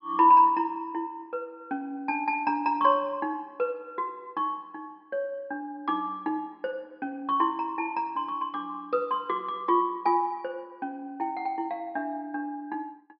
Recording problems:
treble cut off; nothing above 5.5 kHz

